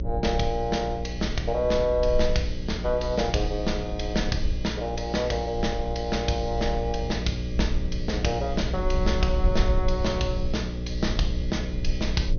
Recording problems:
treble cut off; nothing above 6.4 kHz
mains hum; 60 Hz, harmonics up to 600 Hz, SNR 5 dB
low-frequency rumble; below 54 Hz, SNR 6 dB

